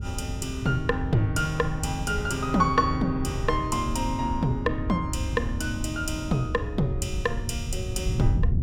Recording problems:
wind noise; below 110 Hz, SNR 5 dB

